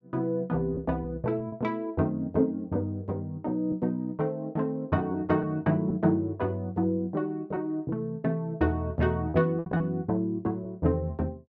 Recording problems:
lost packets; 3% of the sound replaced, filled with repeated pitch periods

